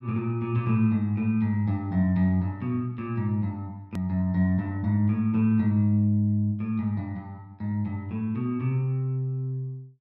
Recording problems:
edit click; at 4 s

